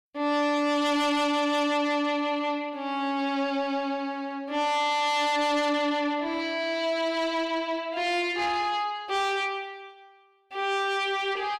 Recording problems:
distorted audio; soft clipping, signal-to-distortion ratio 11 dB

